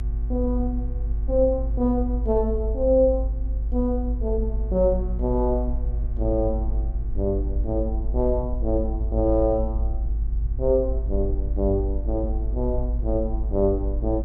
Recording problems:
hum; 60 Hz, harmonics up to 1.2 kHz, SNR 17 dB
rumble; below 54 Hz, strongest tone 52 Hz, SNR 2 dB

